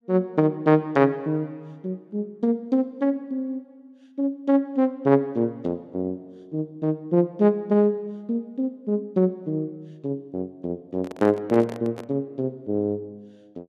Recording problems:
handling noise; from 11 to 12 s; peak -7 dB vs average level

